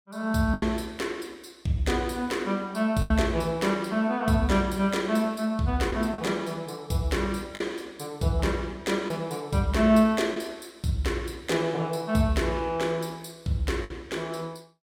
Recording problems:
lost packets; 3% of the sound replaced, filled with the last packet

